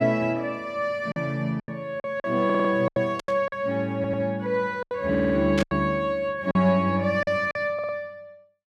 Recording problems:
packet loss; 9% of the sound replaced, filled with silence
stutter; 4 times, first at 2.5 s
burst of static; at 3 s and at 5.5 s; peak -2 dB vs average level

